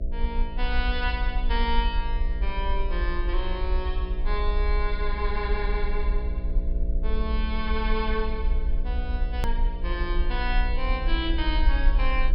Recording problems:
treble missing; nothing above 5.5 kHz
hum; 60 Hz, harmonics up to 660 Hz, SNR 6 dB
low-frequency rumble; below 48 Hz, SNR -2 dB
edit click; at 9.5 s

